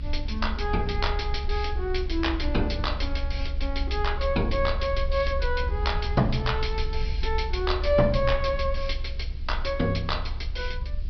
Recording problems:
treble cut off; nothing above 5.5 kHz
hiss; SNR 28 dB
rumble; below 66 Hz, strongest tone 22 Hz, SNR 3 dB

